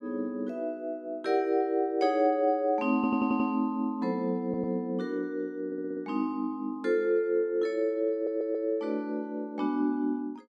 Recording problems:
stutter; 4 times, first at 3 s

